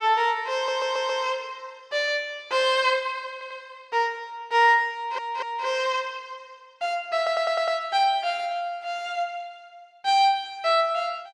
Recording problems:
stutter; 4 times, first at 0.5 s

